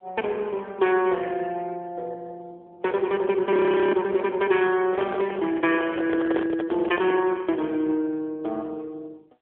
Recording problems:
phone line; 280 Hz to 3.6 kHz, AMR-NB
frozen audio; at 3.5 s
microphone handling noise; from 5 to 7.5 s; peak -3 dB vs average level

